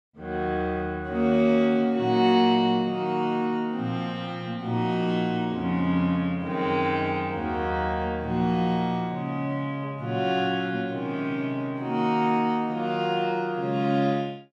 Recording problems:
none

